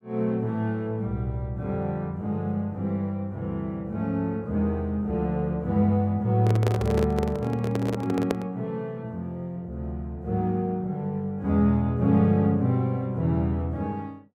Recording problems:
microphone handling noise; from 6.5 to 8.5 s; peak +3 dB vs average level

